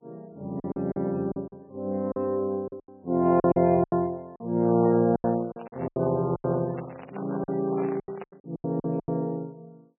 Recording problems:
lossy codec; MP3, log-spectral distance 2 dB, nothing above 2.4 kHz
packet loss; 14% of the sound replaced, filled with silence
handling noise; from 4.5 to 8.5 s; peak -8 dB vs average level

